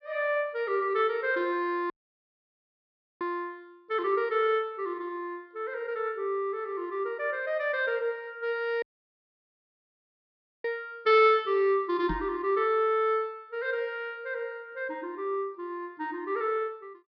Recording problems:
low-pass filter; nothing above 5.5 kHz
dropout; at 2 s for 1.5 s and at 9 s for 2 s
microphone thump; at 12 s; peak -3 dB vs average level

